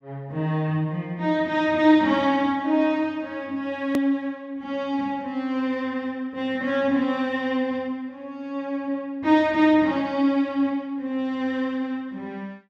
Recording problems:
click at an edit; at 4 s

